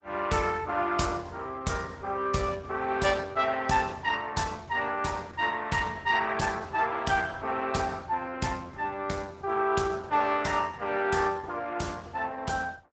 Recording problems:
lossy codec; Opus, log-spectral distance 4 dB, nothing above 7.8 kHz

